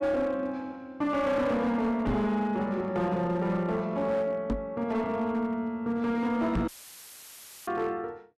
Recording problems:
distorted audio; hard clipping, signal-to-distortion ratio 12 dB
microphone thump; at 2 s, at 4.5 s and at 6.5 s; peak +3 dB vs average level
audio cutting out; at 6.5 s for 1 s; filled with static

